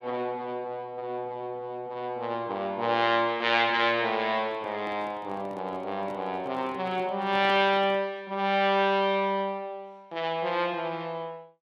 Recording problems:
microphone handling noise; from 4.5 to 8 s; peak -10 dB vs average level

